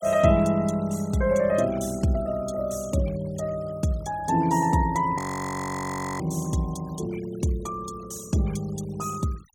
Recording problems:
denoising artefacts; signal-to-artefact ratio 21 dB
frozen audio; at 5 s for 1 s

